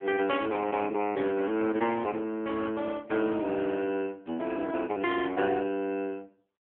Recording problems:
telephone audio; 240 Hz to 3.3 kHz, AMR-NB

